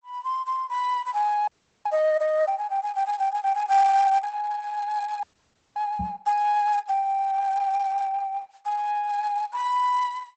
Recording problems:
lossy compression; Opus, log-spectral distance 2 dB, nothing above 8.2 kHz
audio freezing; at 1.5 s and at 5 s for 0.5 s
microphone thump; at 6 s; peak -5 dB vs average level

